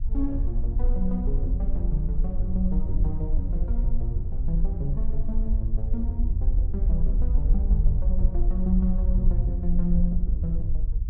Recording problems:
low-frequency rumble; below 52 Hz, SNR -5 dB

